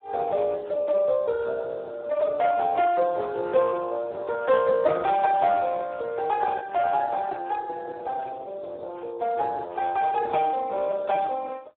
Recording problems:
telephone audio; 370 Hz to 2.1 kHz, Speex

